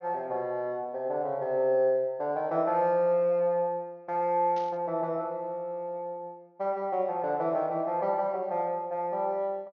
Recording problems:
low-pass filter; nothing above 6.6 kHz
burst of static; at 4.5 s; peak -15 dB vs average level

